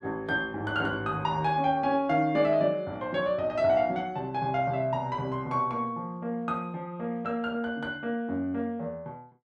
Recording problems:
none

